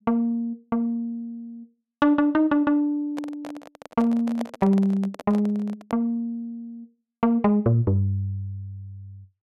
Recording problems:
microphone handling noise; from 3 to 6 s; peak -5 dB vs average level

